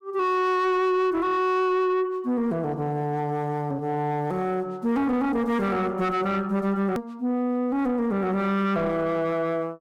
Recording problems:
distortion; soft clipping, signal-to-distortion ratio 7 dB
hard cut with a click; at 7 s

